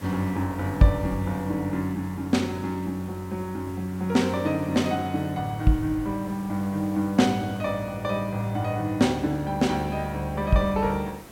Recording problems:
background hiss; slope -5 dB per octave, SNR 20 dB

